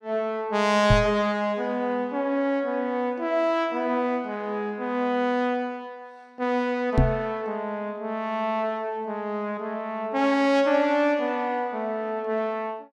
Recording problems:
microphone bump; at 1 s and at 7 s; peak +7 dB vs average level

